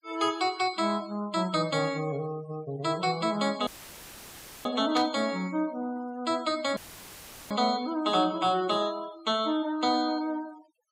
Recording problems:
noise reduction artefacts; signal-to-artefact ratio 21 dB
audio cutting out; at 3.5 s for 1 s and at 7 s for 0.5 s; filled with static
burst of static; at 5 s; peak -3 dB vs average level

